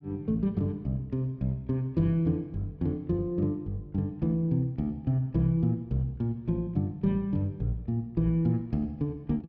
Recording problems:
none

